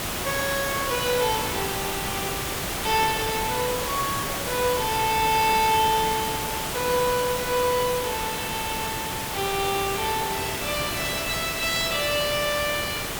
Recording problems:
hiss; slope -3 dB per octave, SNR 2 dB

